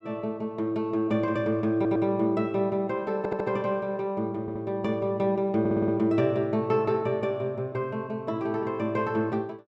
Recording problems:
stutter; 4 times, first at 2 s

